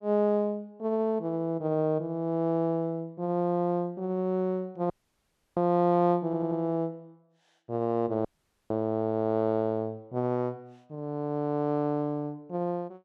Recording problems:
dropout; at 5 s for 0.5 s and at 8.5 s
audio stuttering; at 6 s

